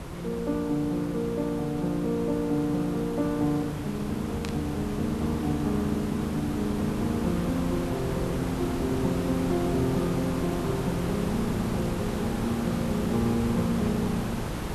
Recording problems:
hiss; slope -6 dB per octave, SNR 5 dB
static burst; at 4.5 s; peak -5 dB vs average level

